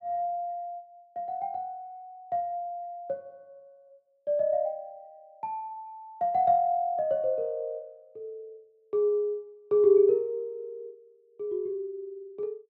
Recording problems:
none

